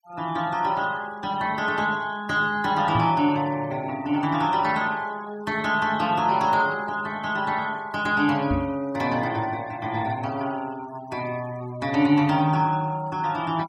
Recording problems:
denoising artefacts; signal-to-artefact ratio 21 dB
knock on the microphone; at 3 s and at 8.5 s; peak 0 dB vs average level

